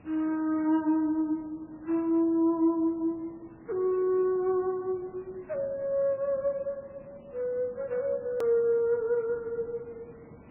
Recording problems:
lossy codec; MP3, log-spectral distance 3 dB, nothing above 19.5 kHz
background hiss; SNR 24 dB
click at an edit; at 8.5 s

